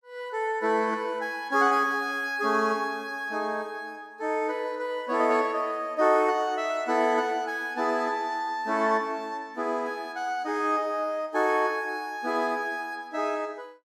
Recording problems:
none

